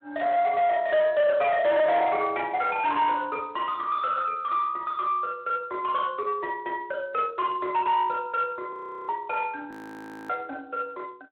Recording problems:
phone line; 340 Hz to 3.5 kHz, Speex
distortion; soft clipping, signal-to-distortion ratio 7 dB
audio freezing; at 8.5 s and at 9.5 s for 0.5 s

